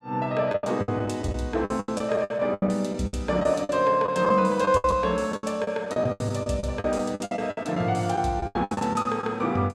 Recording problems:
lost packets; 18% of the sound replaced, filled with the last packet

